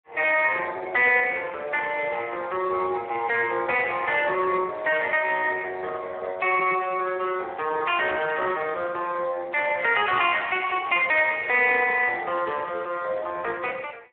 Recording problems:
phone line; 340 Hz to 3.3 kHz, Speex

